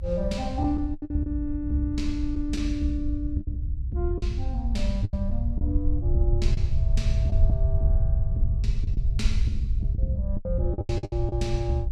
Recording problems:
rumble; below 78 Hz, SNR -2 dB
packet loss; 8% of the sound replaced, filled with the last packet

